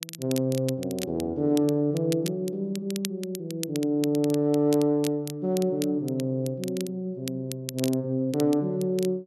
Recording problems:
crackling; vinyl, SNR 14 dB

